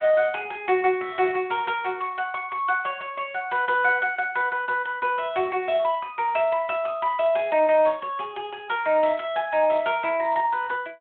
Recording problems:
telephone audio; 260 Hz to 3.5 kHz, Speex

